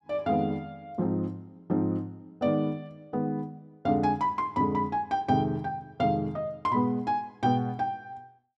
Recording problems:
none

